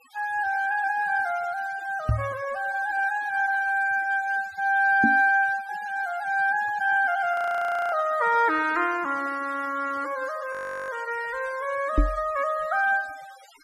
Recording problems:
denoising artefacts; signal-to-artefact ratio 22 dB
microphone bump; at 2 s, at 5 s and at 12 s; peak +5 dB vs average level
audio freezing; at 7.5 s for 0.5 s and at 11 s

